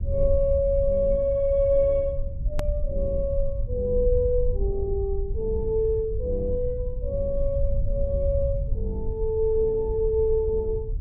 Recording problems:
treble cut off; nothing above 3.7 kHz
rumble; below 68 Hz, SNR 5 dB
hard cut with a click; at 2.5 s

